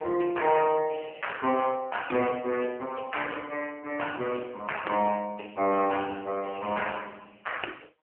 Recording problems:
phone line; 240 Hz to 3 kHz, AMR-NB

